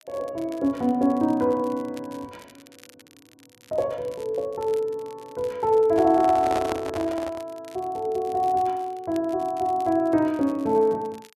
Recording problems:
crackling; vinyl, SNR 27 dB
microphone handling noise; from 6 to 7.5 s; peak -1 dB vs average level

